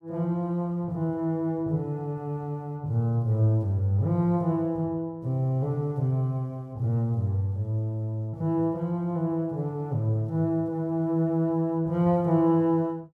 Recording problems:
none

